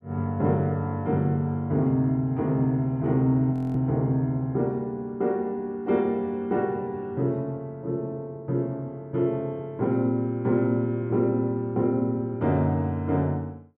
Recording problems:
audio freezing; at 3.5 s

